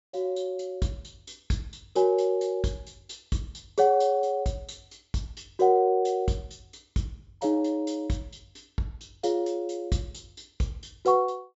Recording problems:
treble cut off; nothing above 8 kHz

